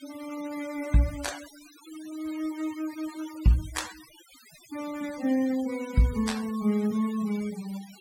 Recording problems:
noise reduction artefacts; signal-to-artefact ratio 17 dB

